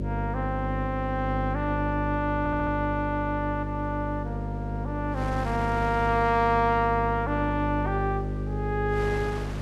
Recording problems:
hum; 50 Hz, harmonics up to 600 Hz, SNR 4 dB
wind on the microphone; below 1.9 kHz, SNR 18 dB
audio stuttering; at 2.5 s

